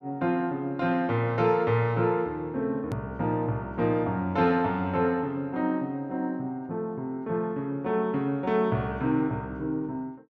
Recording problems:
click at an edit; at 3 s

